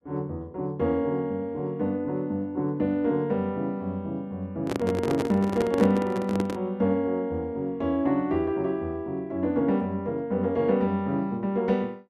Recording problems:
microphone handling noise; from 4.5 to 6.5 s; peak +2 dB vs average level

